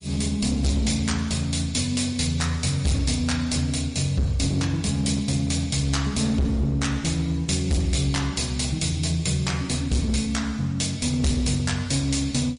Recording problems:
codec artefacts; MP3, log-spectral distance 5 dB, nothing above 10.1 kHz
distorted audio; hard clipping, signal-to-distortion ratio 11 dB

